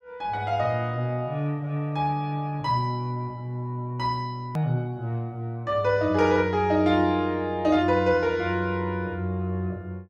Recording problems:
edit click; at 4.5 s

